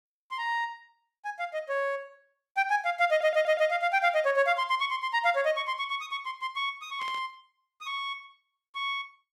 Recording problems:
stutter; at 3 s
burst of static; at 7 s; peak -13 dB vs average level

